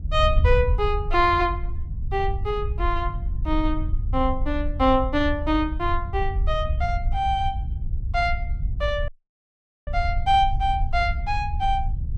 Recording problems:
wind noise; below 74 Hz, SNR 4 dB
audio cutting out; at 9 s for 1 s

